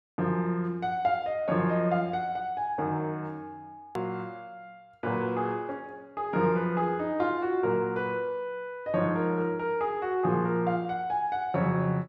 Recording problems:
edit click; at 4 s

